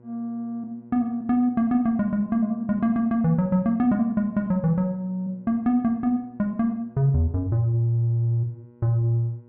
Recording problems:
hum; 60 Hz, harmonics up to 1.1 kHz, SNR 27 dB

